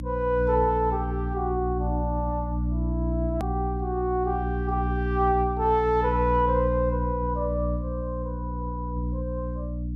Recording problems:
hum; 60 Hz, harmonics up to 300 Hz, SNR 3 dB
hard cut with a click; at 3.5 s

